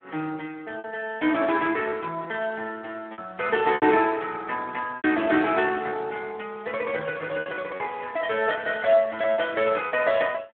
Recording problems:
phone line; 260 Hz to 3.1 kHz, Speex
packet loss; 6% of the sound replaced, filled with repeated pitch periods

